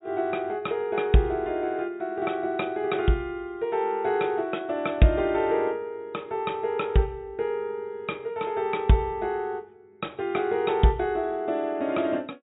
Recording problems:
treble cut off; nothing above 4 kHz

